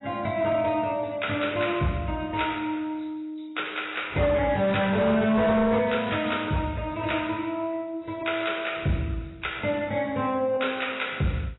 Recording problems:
lossy codec; AAC, log-spectral distance 5 dB, nothing above 3.9 kHz
distortion; hard clipping, signal-to-distortion ratio 12 dB

